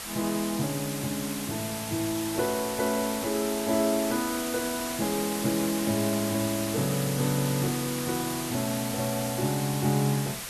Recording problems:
background hiss; slope 0 dB per octave, SNR 5 dB

